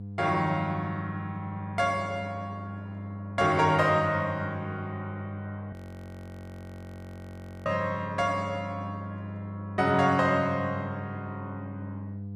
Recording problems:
hum; 50 Hz, harmonics up to 500 Hz, SNR 10 dB
frozen audio; at 5.5 s for 2 s

